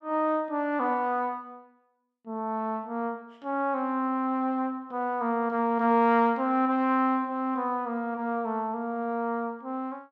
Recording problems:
none

